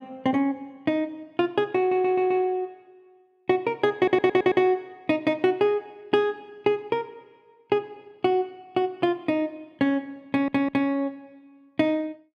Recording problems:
audio stuttering; at 2 s, at 4 s and at 10 s

